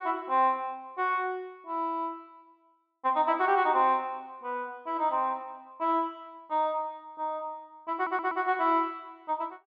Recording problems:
audio stuttering; at 8 s

